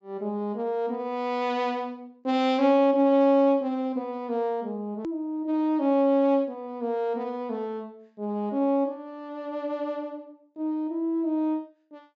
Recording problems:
low-pass filter; nothing above 8 kHz
hard cut with a click; at 5 s

